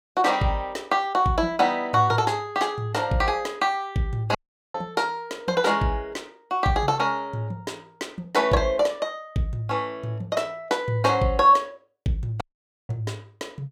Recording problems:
audio cutting out; at 4.5 s and at 12 s

